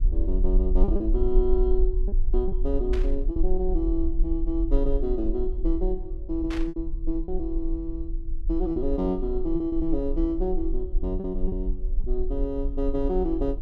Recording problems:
low-frequency rumble; below 40 Hz, strongest tone 20 Hz, SNR 1 dB
packet loss; 4% of the sound replaced, filled with repeated pitch periods
static burst; at 3 s and at 6.5 s; peak -5 dB vs average level

